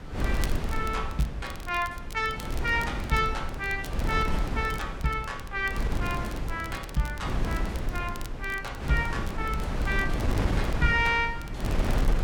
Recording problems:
wind noise; below 220 Hz, SNR 2 dB
crackle; vinyl, SNR 18 dB

